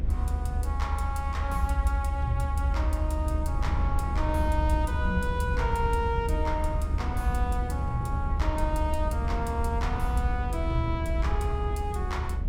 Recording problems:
rumble; below 80 Hz, SNR -1 dB

